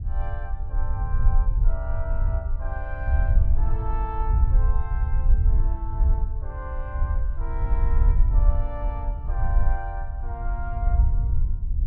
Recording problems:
low-frequency rumble; below 62 Hz, SNR -12 dB

